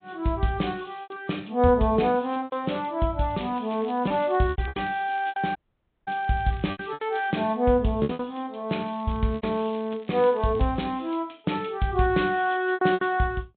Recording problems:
treble missing; nothing above 3.9 kHz
lossy compression; MP3, log-spectral distance 3 dB
lost packets; 8% of the sound replaced, filled with repeated pitch periods
crackling; from 3.5 to 5 s, from 5 to 7.5 s and from 8.5 to 11 s; loose cable, SNR 27 dB
dropout; at 5.5 s for 0.5 s

